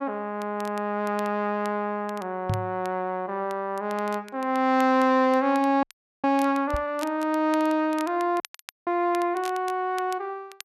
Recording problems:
crackle; vinyl, SNR 21 dB
microphone bump; at 2.5 s and at 6.5 s; peak +1 dB vs average level
frozen audio; at 6 s and at 8.5 s

